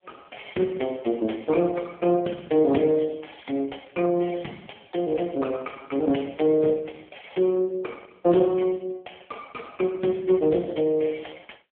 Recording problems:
telephone audio; 190 Hz to 3.4 kHz, AMR-NB

